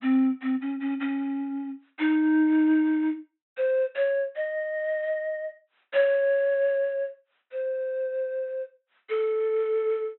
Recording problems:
treble missing; nothing above 3.9 kHz

